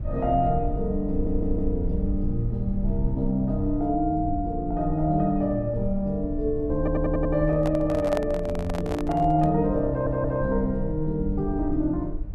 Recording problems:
low-frequency rumble; below 64 Hz, SNR 9 dB
stutter; at 1 s, at 7 s and at 10 s
handling noise; from 7.5 to 9.5 s; peak -2 dB vs average level

